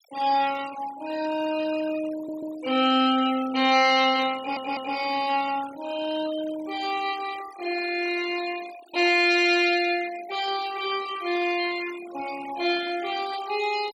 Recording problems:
denoising artefacts; signal-to-artefact ratio 15 dB
audio stuttering; at 2 s and at 4.5 s

